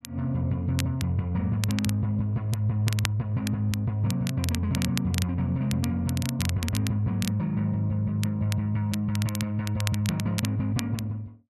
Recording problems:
crackle; vinyl, SNR 10 dB

